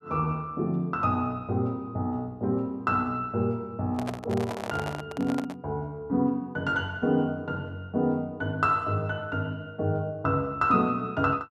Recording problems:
microphone handling noise; from 4 to 5.5 s; peak -2 dB vs average level

